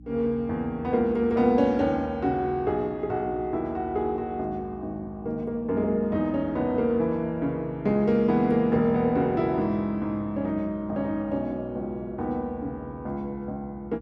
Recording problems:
hum; 60 Hz, harmonics up to 300 Hz, SNR 21 dB

